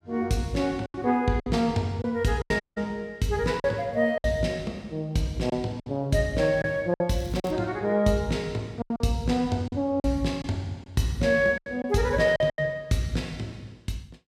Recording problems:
packet loss; 7% of the sound replaced, filled with silence
audio cutting out; at 2.5 s
crackling; at 7 s; loose cable, SNR 26 dB

